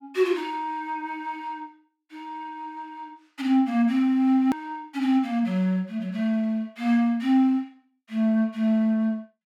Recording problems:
hard cut with a click; at 4.5 s

